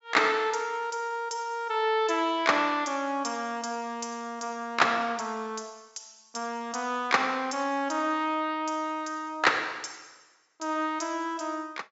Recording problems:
treble missing; nothing above 8 kHz

